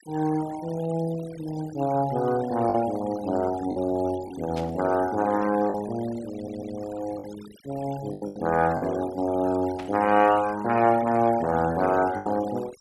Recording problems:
denoising artefacts; signal-to-artefact ratio 17 dB
packet loss; 4% of the sound replaced, filled with the last packet
static burst; at 4.5 s and at 10 s; peak -11 dB vs average level
stutter; at 6.5 s

